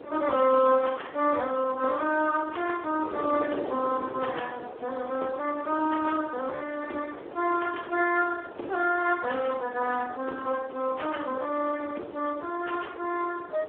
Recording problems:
telephone audio; 260 Hz to 2.9 kHz, Speex
wind on the microphone; below 700 Hz, SNR 13 dB

